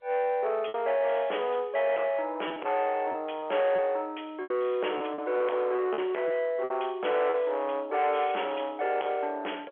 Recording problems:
telephone audio; 320 Hz to 3.3 kHz, G.711
distorted audio; soft clipping, signal-to-distortion ratio 10 dB
lost packets; 5% of the sound replaced, filled with repeated pitch periods

